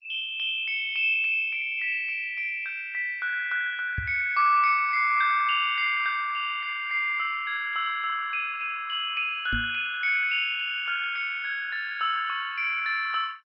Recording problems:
lossy compression; MP2, log-spectral distance 4 dB, nothing above 4.5 kHz
microphone thump; at 4 s and at 9.5 s; peak -3 dB vs average level

